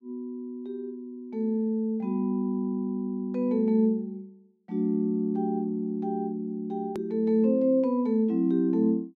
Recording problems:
click at an edit; at 7 s

